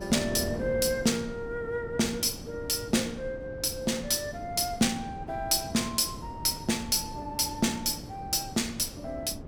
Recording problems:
wind noise; below 350 Hz, SNR 13 dB

